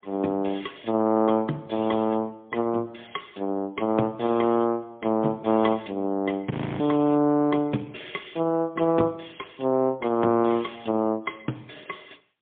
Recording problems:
phone line; 150 Hz to 3.6 kHz, AMR-NB, then MP3
frozen audio; at 6.5 s

